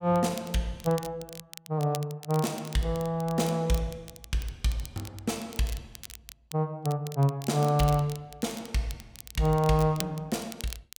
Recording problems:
crackle; vinyl, SNR 15 dB

